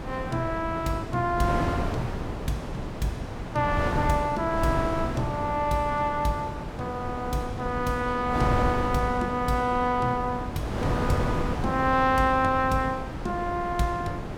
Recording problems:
wind noise; below 570 Hz, SNR 4 dB

